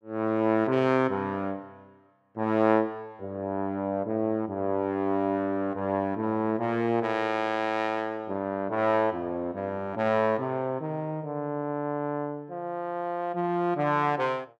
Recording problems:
none

